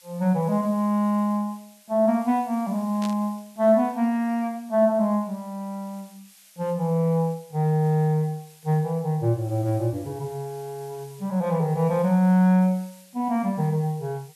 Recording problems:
background hiss; slope +5 dB per octave, SNR 27 dB
static burst; at 3 s; peak -9 dB vs average level

